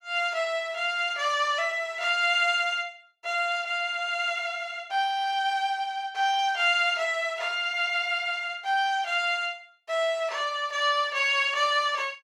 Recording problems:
none

